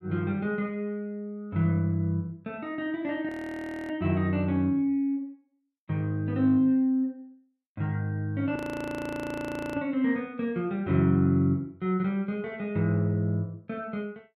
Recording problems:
audio freezing; at 3.5 s for 0.5 s and at 8.5 s for 1 s

